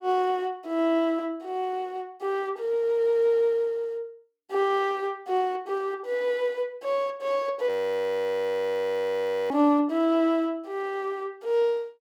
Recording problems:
frozen audio; at 7.5 s for 2 s

